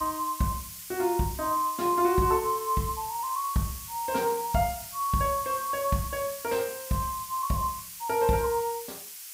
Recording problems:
hiss; slope +6 dB per octave, SNR 10 dB

